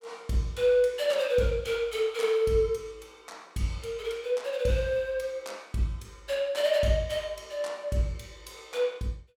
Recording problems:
none

